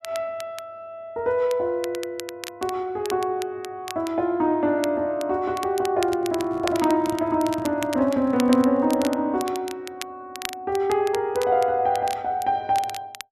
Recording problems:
crackling; vinyl, SNR 15 dB
microphone handling noise; from 6 to 9 s; peak -10 dB vs average level

